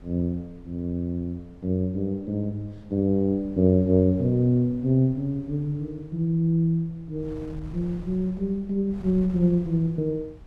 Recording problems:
wind on the microphone; below 130 Hz, SNR 20 dB

